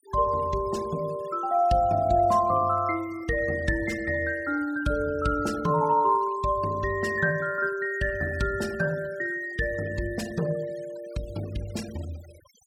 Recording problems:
denoising artefacts; signal-to-artefact ratio 21 dB

